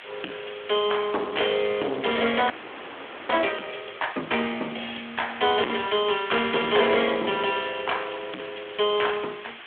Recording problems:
telephone audio; 260 Hz to 3.5 kHz, Speex
distortion; hard clipping, uneven, signal-to-distortion ratio 11 dB
background hiss; SNR 16 dB
audio freezing; at 2.5 s for 1 s

